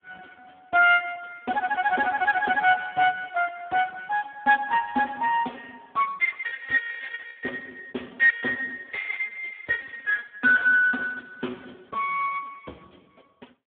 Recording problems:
telephone audio; 240 Hz to 2.1 kHz, Speex

